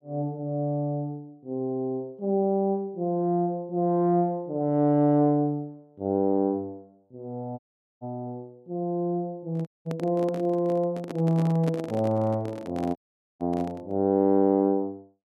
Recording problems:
audio cutting out; at 7.5 s, at 9.5 s and at 13 s
handling noise; from 9.5 to 14 s; peak -3 dB vs average level

